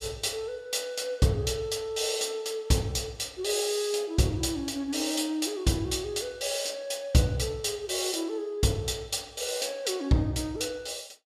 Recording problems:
none

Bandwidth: 14.5 kHz